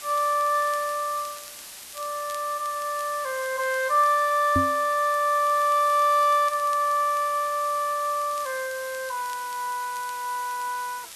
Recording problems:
background hiss; slope +1 dB per octave, SNR 15 dB
crackling; vinyl, SNR 26 dB
knock on the microphone; at 4.5 s; peak +2 dB vs average level

